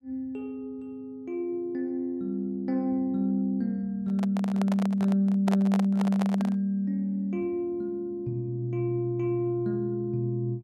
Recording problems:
microphone handling noise; from 4 to 6.5 s; peak -1 dB vs average level

